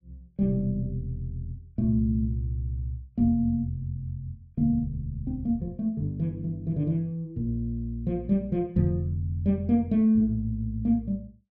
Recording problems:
none

